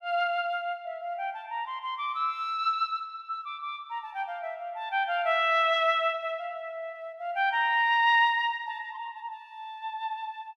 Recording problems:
none

